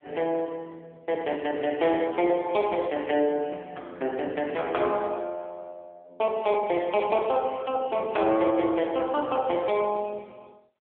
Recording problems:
phone line; 280 Hz to 3.6 kHz, AMR-NB

